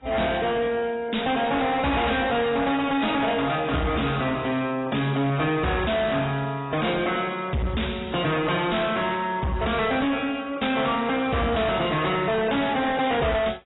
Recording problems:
lossy codec; AAC, log-spectral distance 7 dB, nothing above 3.8 kHz
distorted audio; soft clipping, signal-to-distortion ratio 6 dB

